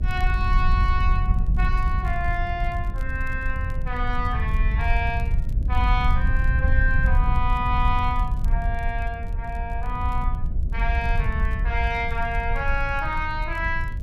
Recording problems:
hum; 60 Hz, harmonics up to 660 Hz, SNR 21 dB
wind noise; below 70 Hz, SNR -2 dB
crackling; vinyl, SNR 29 dB

